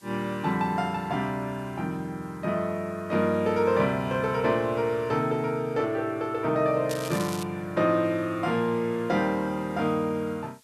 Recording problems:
hiss; slope +1 dB per octave, SNR 30 dB
crackle; at 7 s; loose cable, SNR 12 dB

